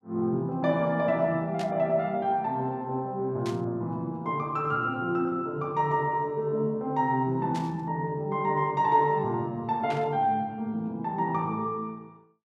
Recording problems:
static burst; 4 times, first at 1.5 s; peak -8 dB vs average level

